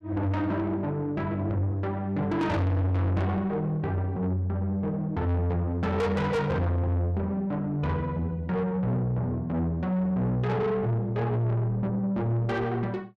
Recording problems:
distorted audio; soft clipping, signal-to-distortion ratio 7 dB

